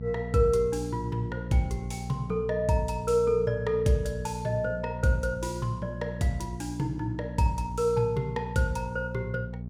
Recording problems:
electrical hum; 60 Hz, harmonics up to 480 Hz, SNR 8 dB

